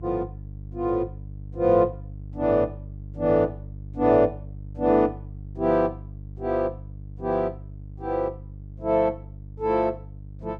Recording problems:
hum; 50 Hz, harmonics up to 450 Hz, SNR 15 dB

